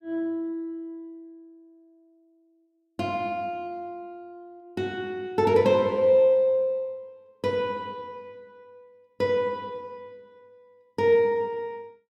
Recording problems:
none

